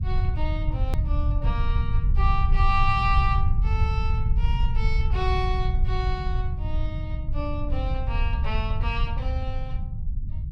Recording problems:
rumble; below 82 Hz, SNR -5 dB
click at an edit; at 1 s

